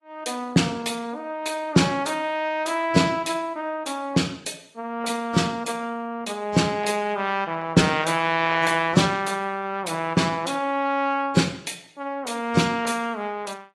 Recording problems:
lossy codec; AAC, log-spectral distance 3 dB, nothing above 11.3 kHz

